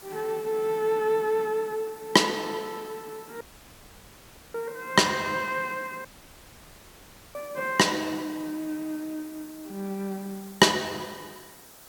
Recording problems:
background hiss; SNR 21 dB
dropout; at 3.5 s for 1 s and at 6 s for 1.5 s

